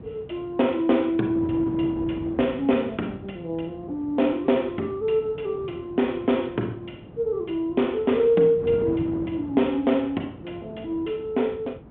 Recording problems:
telephone audio; 170 Hz to 3.5 kHz, G.726
wind on the microphone; below 380 Hz, SNR 15 dB

